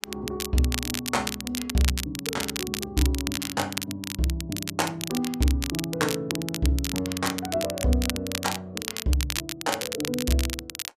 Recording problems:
crackling; vinyl, SNR 4 dB

